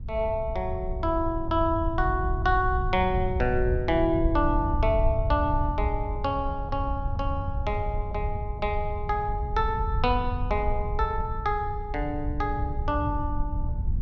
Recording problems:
wind on the microphone; below 88 Hz, SNR 3 dB

